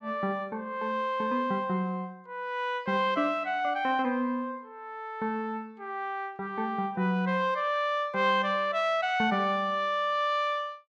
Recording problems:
none

